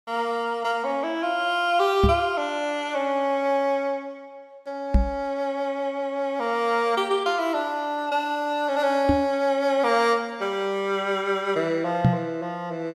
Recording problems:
knock on the microphone; 4 times, first at 2 s; peak +9 dB vs average level

